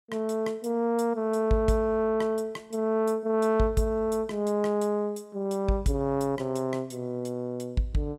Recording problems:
none

